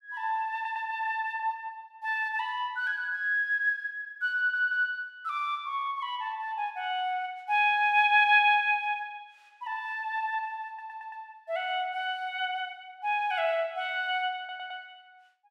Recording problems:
audio stuttering; 4 times, first at 0.5 s

